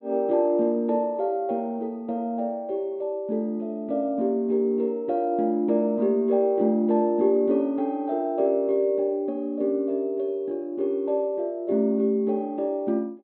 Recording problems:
treble cut off; nothing above 4.1 kHz

